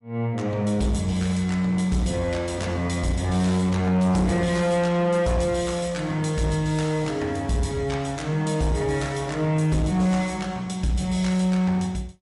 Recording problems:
lossy codec; MP3, log-spectral distance 2 dB, nothing above 11 kHz
distorted audio; soft clipping, signal-to-distortion ratio 10 dB

